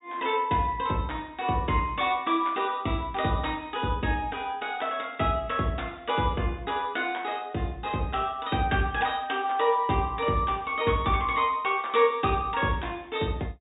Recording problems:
low-pass filter; nothing above 4 kHz

